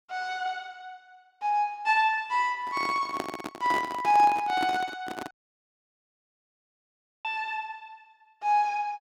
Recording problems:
handling noise; from 2.5 to 5.5 s; peak -1 dB vs average level
audio cutting out; at 5.5 s for 2 s

